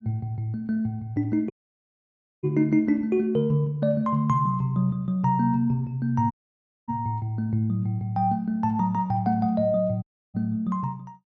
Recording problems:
audio cutting out; at 1.5 s for 1 s, at 6.5 s for 0.5 s and at 10 s

